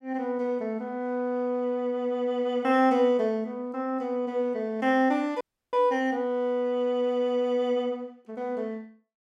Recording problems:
audio freezing; at 5.5 s

